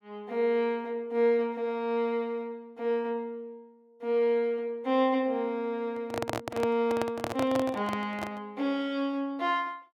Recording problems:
microphone handling noise; from 6 to 8.5 s; peak +1 dB vs average level

